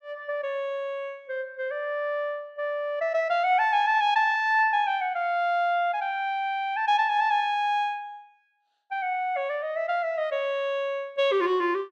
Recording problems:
none

